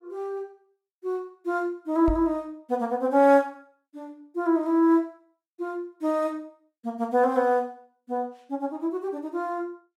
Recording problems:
knock on the microphone; at 2 s; peak -1 dB vs average level

